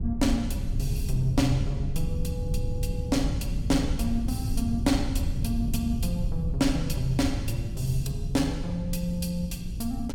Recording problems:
rumble; below 110 Hz, SNR 2 dB

